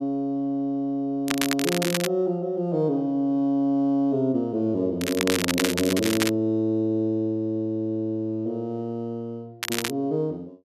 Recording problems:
crackling; at 1.5 s, from 5 to 6.5 s and at 9.5 s; loose cable, SNR 3 dB

